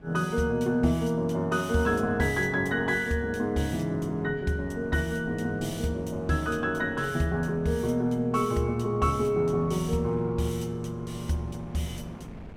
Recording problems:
wind noise; below 330 Hz, SNR 19 dB

